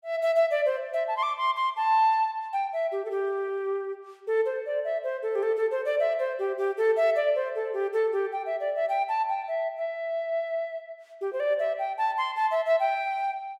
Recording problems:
none

